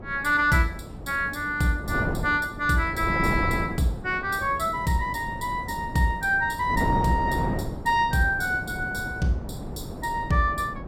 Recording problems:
wind on the microphone; below 400 Hz, SNR 8 dB

